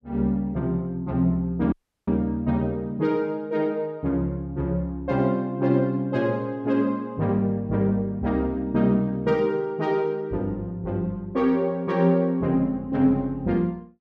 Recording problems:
audio cutting out; at 1.5 s

